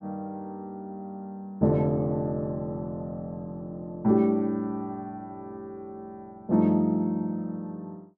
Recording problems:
none

